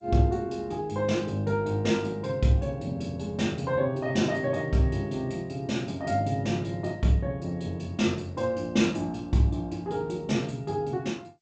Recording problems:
codec artefacts; G.722, log-spectral distance 2 dB

